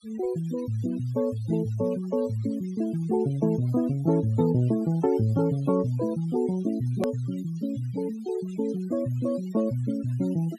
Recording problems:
noise reduction artefacts; signal-to-artefact ratio 22 dB
edit click; at 7 s

